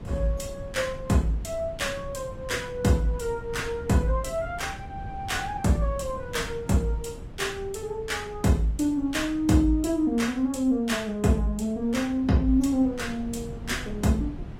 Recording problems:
lossy compression; AAC, log-spectral distance 2 dB, nothing above 16 kHz
wind on the microphone; below 180 Hz, SNR 15 dB

